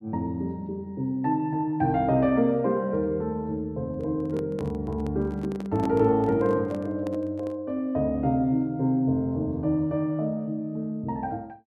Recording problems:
microphone handling noise; from 4 to 7.5 s; peak -5 dB vs average level

